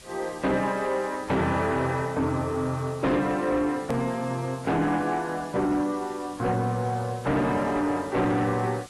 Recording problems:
lossy codec; AAC, log-spectral distance 4 dB, nothing above 12.7 kHz
distortion; soft clipping, signal-to-distortion ratio 10 dB
hiss; slope -1 dB per octave, SNR 20 dB
edit click; at 4 s

